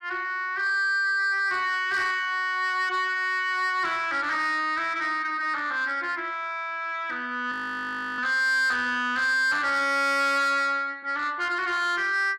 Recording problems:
distorted audio; soft clipping, signal-to-distortion ratio 11 dB
audio freezing; at 7.5 s for 0.5 s

